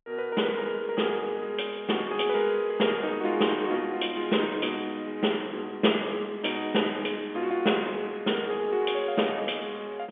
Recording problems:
telephone audio; 240 Hz to 3.4 kHz, G.711

